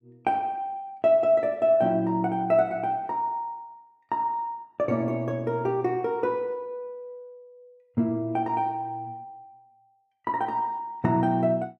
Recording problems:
none

